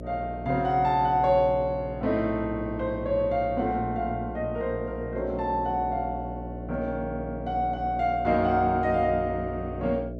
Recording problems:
mains hum; 60 Hz, harmonics up to 660 Hz, SNR 10 dB

